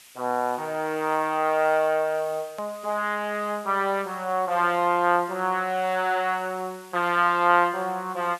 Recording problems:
hiss; SNR 23 dB
click at an edit; at 2.5 s

